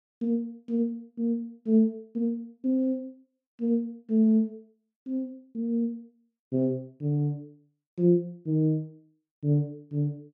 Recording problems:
none

